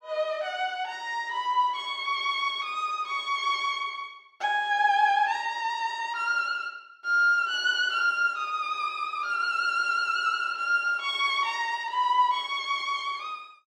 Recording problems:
none

